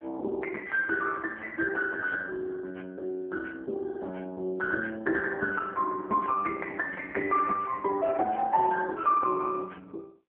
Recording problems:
telephone audio; 260 Hz to 2.1 kHz, AMR-NB

